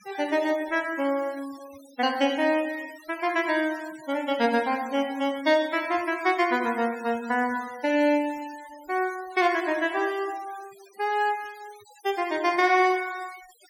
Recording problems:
denoising artefacts; signal-to-artefact ratio 20 dB

